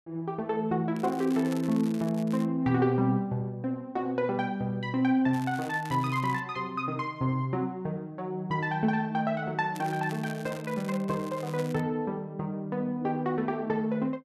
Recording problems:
crackle; from 1 to 2.5 s, from 5.5 to 6.5 s and from 9.5 to 12 s; loose cable, SNR 19 dB

